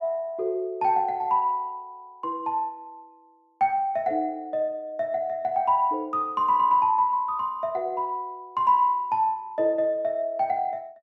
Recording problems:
none

